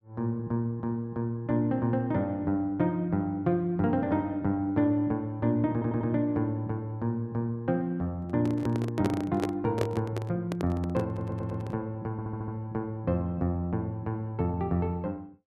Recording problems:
stutter; at 5.5 s, at 11 s and at 12 s
microphone handling noise; from 8 to 12 s; peak +3 dB vs average level

